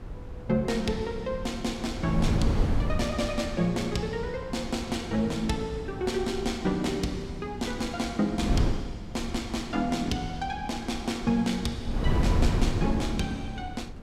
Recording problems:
wind noise; below 160 Hz, SNR 4 dB

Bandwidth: 16.5 kHz